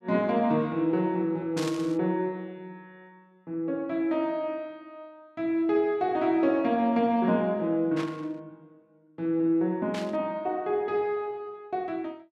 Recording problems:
static burst; at 1.5 s, at 8 s and at 10 s; peak -5 dB vs average level

